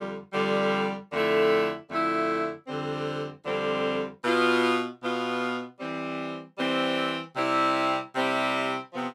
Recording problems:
none

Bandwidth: 16 kHz